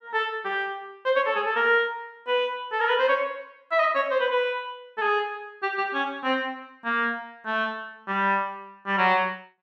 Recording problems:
none

